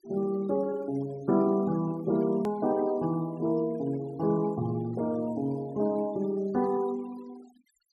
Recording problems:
noise reduction artefacts; signal-to-artefact ratio 24 dB
edit click; at 2.5 s

